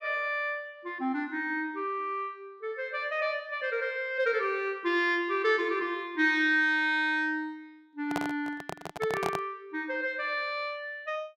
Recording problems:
handling noise; from 8 to 9.5 s; peak +2 dB vs average level

